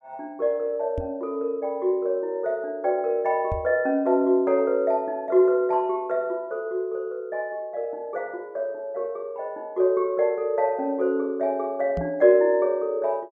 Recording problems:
microphone thump; at 1 s, at 3.5 s and at 12 s; peak -3 dB vs average level

